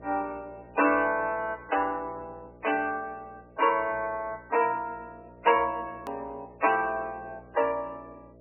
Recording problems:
lossy codec; MP3, log-spectral distance 3 dB, nothing above 2.4 kHz
hum; 60 Hz, harmonics up to 660 Hz, SNR 24 dB
hard cut with a click; at 6 s

